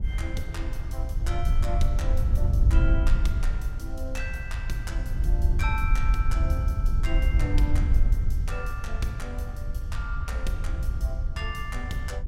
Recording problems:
wind noise; below 70 Hz, SNR -8 dB

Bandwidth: 16 kHz